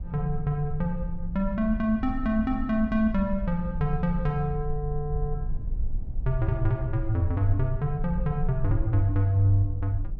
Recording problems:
low-frequency rumble; below 56 Hz, SNR 8 dB

